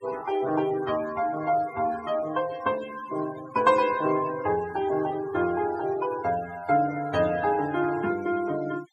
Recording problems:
noise reduction artefacts; signal-to-artefact ratio 16 dB

